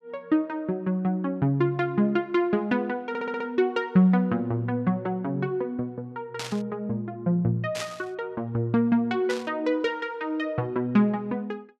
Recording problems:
audio stuttering; at 3 s
static burst; at 6.5 s, at 8 s and at 9.5 s; peak -3 dB vs average level

